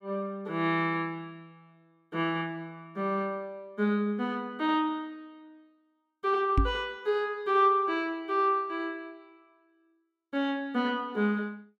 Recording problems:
microphone thump; at 6.5 s; peak +7 dB vs average level

